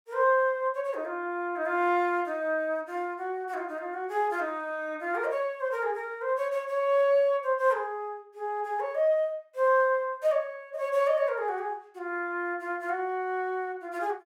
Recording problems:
none

